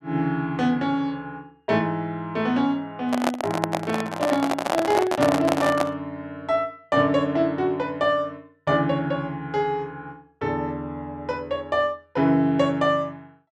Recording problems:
handling noise; from 3 to 6 s; peak +4 dB vs average level

